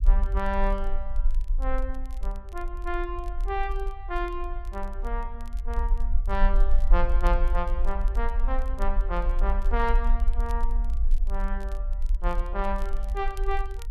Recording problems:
rumble; below 44 Hz, strongest tone 20 Hz, SNR -3 dB
crackle; vinyl, SNR 25 dB

